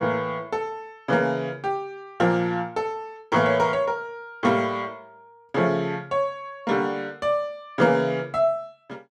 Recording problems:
none

